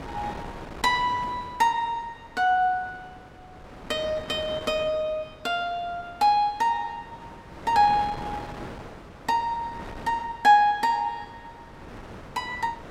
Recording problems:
wind on the microphone; below 1.1 kHz, SNR 17 dB

